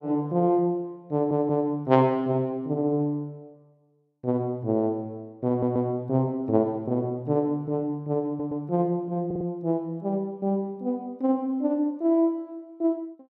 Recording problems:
stutter; 4 times, first at 1 s

